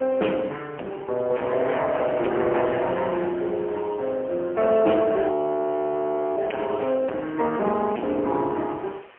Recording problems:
phone line; 220 Hz to 3.2 kHz, AMR-NB, then MP3
distortion; soft clipping, signal-to-distortion ratio 11 dB
hiss; SNR 27 dB
audio freezing; at 5.5 s for 1 s

